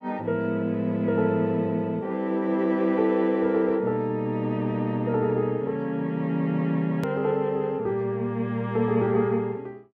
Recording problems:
hard cut with a click; at 7 s

